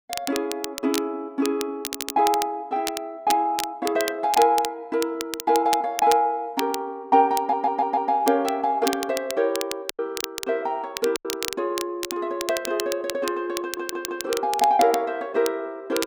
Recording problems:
crackling; vinyl, SNR 9 dB
packet loss; 1.2% of the sound replaced, filled with silence
audio stuttering; at 2 s, at 7.5 s and at 14 s

